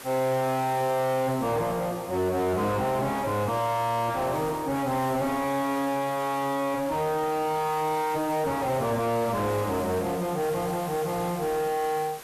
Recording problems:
distortion; soft clipping, signal-to-distortion ratio 6 dB
background hiss; slope -3 dB per octave, SNR 16 dB
crackling; at 3.5 s, from 7 to 8 s and from 8.5 to 12 s; loose cable, SNR 21 dB

